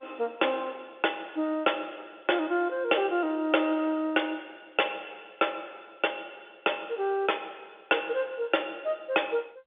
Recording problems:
phone line; 260 Hz to 3.6 kHz, G.711
distortion; soft clipping, signal-to-distortion ratio 12 dB

